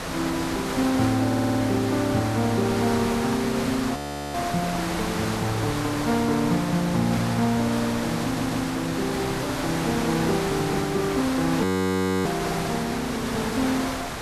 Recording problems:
background hiss; slope -4 dB per octave, SNR 5 dB
audio stuttering; at 1.5 s and at 8 s
audio freezing; at 4 s and at 12 s for 0.5 s

